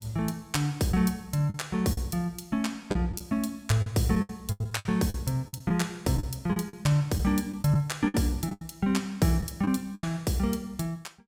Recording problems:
lost packets; 9% of the sound replaced, filled with the last packet

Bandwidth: 17 kHz